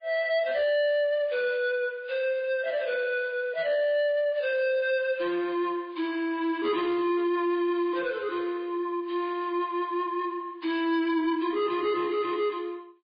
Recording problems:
lossy compression; MP3, log-spectral distance 2 dB, nothing above 4.5 kHz
distorted audio; soft clipping, signal-to-distortion ratio 11 dB

